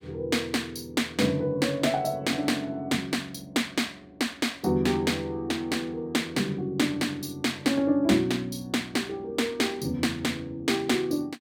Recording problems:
none

